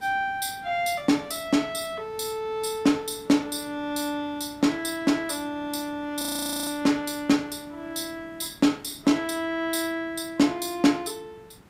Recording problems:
hiss; slope -6 dB per octave, SNR 25 dB
frozen audio; at 6 s

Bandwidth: 15.5 kHz